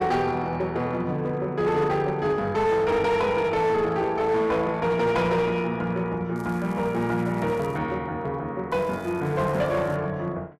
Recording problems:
distortion; hard clipping, uneven, signal-to-distortion ratio 11 dB
crackling; from 6.5 to 8 s and from 8.5 to 10 s; loose cable, SNR 28 dB

